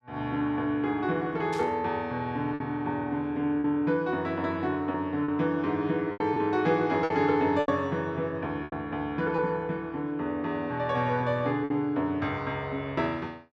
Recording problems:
lost packets; 4% of the sound replaced, filled with repeated pitch periods
static burst; at 1.5 s; peak -10 dB vs average level

